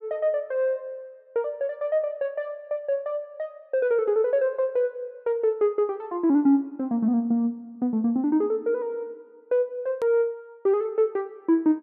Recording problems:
edit click; at 10 s

